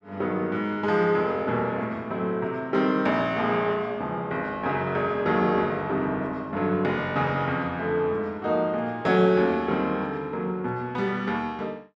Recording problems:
none

